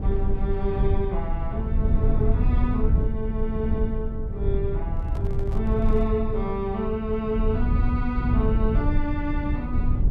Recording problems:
rumble; below 94 Hz, SNR -3 dB
handling noise; from 5 to 6 s; peak -9 dB vs average level

